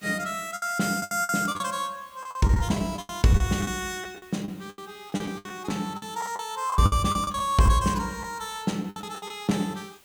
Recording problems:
hiss; SNR 27 dB
packet loss; 14% of the sound replaced, filled with the last packet

